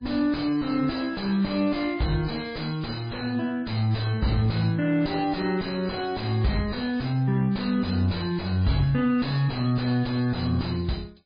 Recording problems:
lossy compression; MP3, log-spectral distance 4 dB, nothing above 4.1 kHz
distorted audio; soft clipping, signal-to-distortion ratio 4 dB

